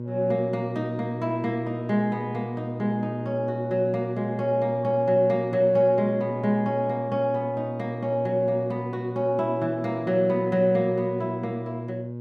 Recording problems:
hum; 60 Hz, harmonics up to 600 Hz, SNR 8 dB

